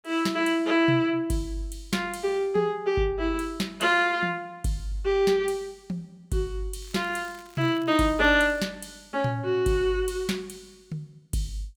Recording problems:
crackle; from 7 to 8.5 s; loose cable, SNR 27 dB

